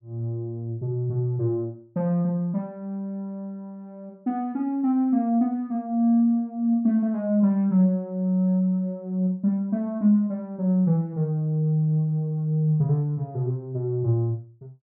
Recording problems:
none

